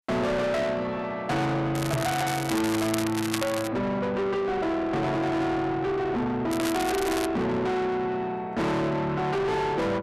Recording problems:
distorted audio; soft clipping, signal-to-distortion ratio 6 dB
crackle; from 2 to 3.5 s and at 6.5 s; loose cable, SNR 8 dB
microphone bump; at 2 s; peak +5 dB vs average level

